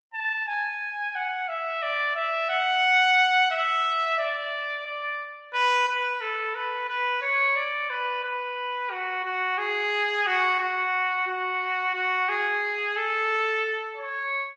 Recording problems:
lossy compression; Opus, log-spectral distance 2 dB

